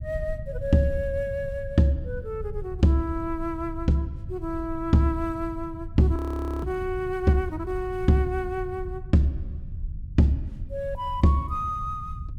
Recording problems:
rumble; below 96 Hz, SNR 11 dB
audio freezing; at 6 s

